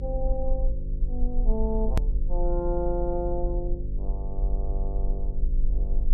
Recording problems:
hum; 50 Hz, harmonics up to 550 Hz, SNR 3 dB
rumble; below 42 Hz, SNR -2 dB
click at an edit; at 2 s

